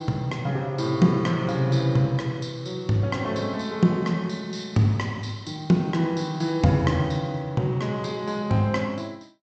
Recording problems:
low-pass filter; nothing above 8 kHz

